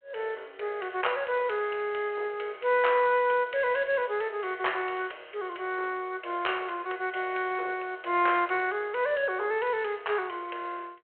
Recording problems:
phone line; 320 Hz to 3.4 kHz, G.726

